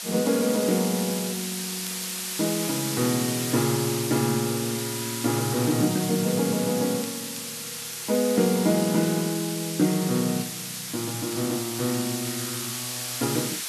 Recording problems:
background hiss; slope +3 dB per octave, SNR 4 dB
crackling; vinyl, SNR 25 dB

